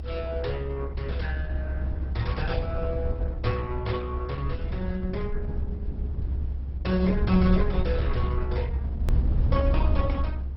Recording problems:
lossy compression; Opus, then MP2, log-spectral distance 2 dB, nothing above 5.5 kHz
mains hum; 60 Hz, harmonics up to 420 Hz, SNR 19 dB
rumble; below 78 Hz, SNR -1 dB
edit click; at 9 s

